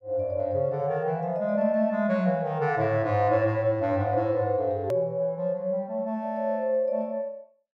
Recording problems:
click at an edit; at 5 s

